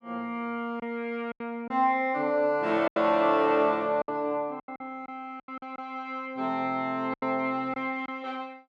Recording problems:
packet loss; 8% of the sound replaced, filled with silence

